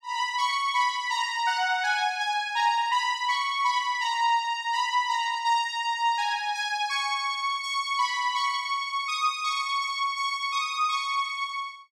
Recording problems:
none

